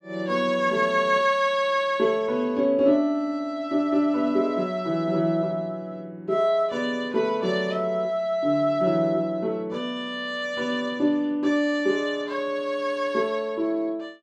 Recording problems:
none

